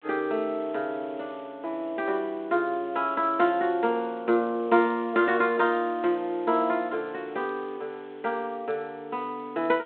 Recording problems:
phone line; 260 Hz to 3.7 kHz, G.726
background hiss; SNR 27 dB

